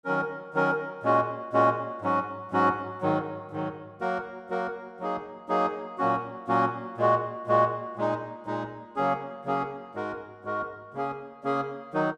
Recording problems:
none

